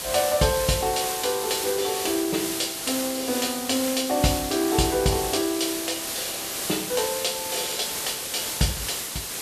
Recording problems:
background hiss; slope 0 dB per octave, SNR 3 dB

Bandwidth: 14 kHz